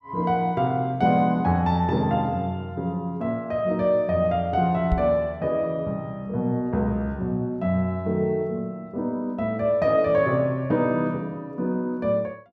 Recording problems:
microphone thump; at 5 s; peak +3 dB vs average level

